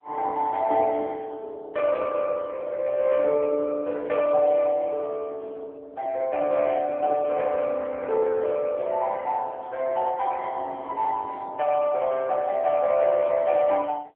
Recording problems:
telephone audio; 280 Hz to 3 kHz, AMR-NB

